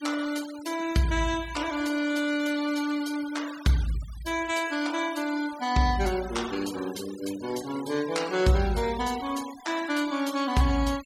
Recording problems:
noise reduction artefacts; signal-to-artefact ratio 15 dB

